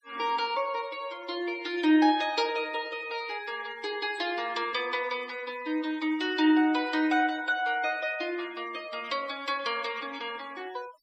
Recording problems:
noise reduction artefacts; signal-to-artefact ratio 22 dB

